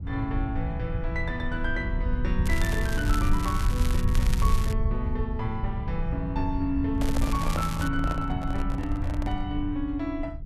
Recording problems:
low-frequency rumble; below 84 Hz, SNR -1 dB
crackling; from 2.5 to 4.5 s and at 7 s; loose cable, SNR 8 dB
microphone handling noise; from 7 to 9.5 s; peak +2 dB vs average level

